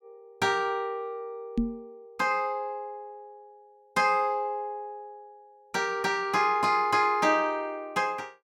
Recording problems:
knock on the microphone; at 1.5 s; peak +4 dB vs average level

